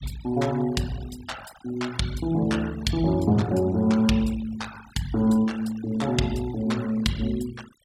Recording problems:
denoising artefacts; signal-to-artefact ratio 19 dB

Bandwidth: 16.5 kHz